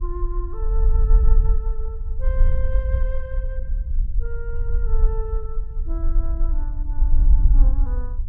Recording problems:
rumble; below 48 Hz, SNR -14 dB

